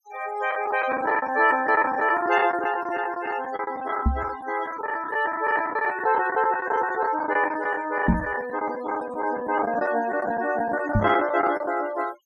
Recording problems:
noise reduction artefacts; signal-to-artefact ratio 17 dB
packet loss; 15% of the sound replaced, filled with the last packet
microphone thump; at 4 s, at 8 s and at 11 s; peak +7 dB vs average level

